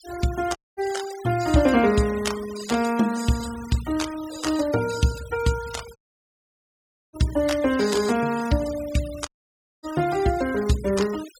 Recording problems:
denoising artefacts; signal-to-artefact ratio 15 dB
dropout; at 0.5 s, at 6 s for 1 s and at 9.5 s for 0.5 s

